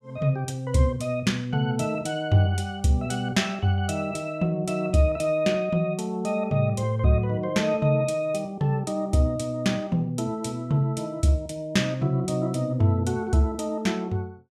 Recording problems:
none

